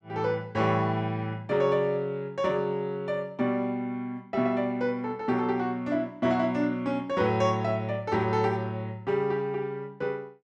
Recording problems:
none

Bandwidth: 12 kHz